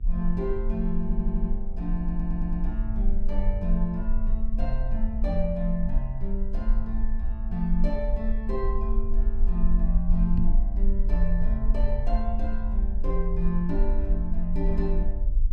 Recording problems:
hum; 50 Hz, harmonics up to 500 Hz, SNR 22 dB
low-frequency rumble; below 40 Hz, strongest tone 20 Hz, SNR -2 dB
audio stuttering; at 1 s and at 2 s
microphone bump; at 10 s; peak +4 dB vs average level

